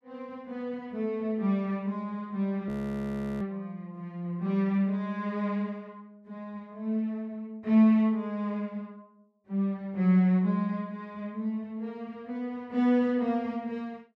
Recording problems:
audio freezing; at 2.5 s for 0.5 s

